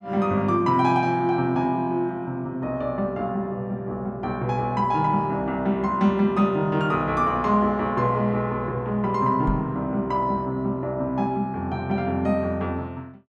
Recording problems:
microphone bump; at 9.5 s; peak 0 dB vs average level

